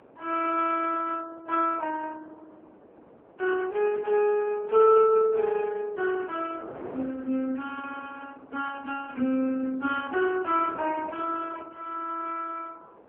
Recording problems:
phone line; 280 Hz to 3.3 kHz, AMR-NB
wind on the microphone; below 740 Hz, SNR 21 dB

